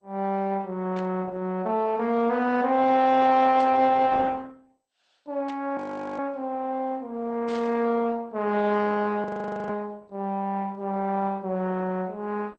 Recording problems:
lossy codec; Opus, then MP2, log-spectral distance 3 dB
static burst; 4 times, first at 1 s; peak -13 dB vs average level
audio freezing; at 6 s and at 9 s

